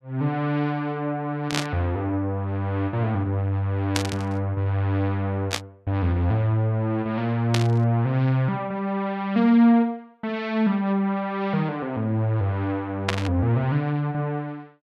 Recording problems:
burst of static; 5 times, first at 1.5 s; peak +4 dB vs average level

